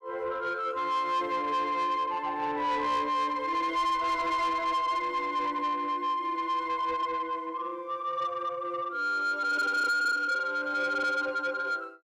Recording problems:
distorted audio; soft clipping, signal-to-distortion ratio 11 dB

